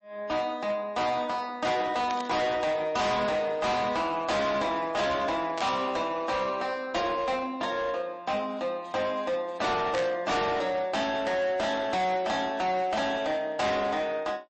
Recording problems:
lossy codec; MP3, log-spectral distance 2 dB, nothing above 8 kHz
distorted audio; hard clipping, signal-to-distortion ratio 7 dB
burst of static; at 2 s, at 5.5 s and at 10 s; peak -5 dB vs average level

